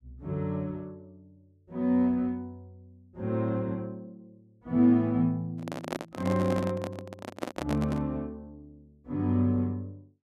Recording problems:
microphone handling noise; from 5.5 to 8 s; peak 0 dB vs average level

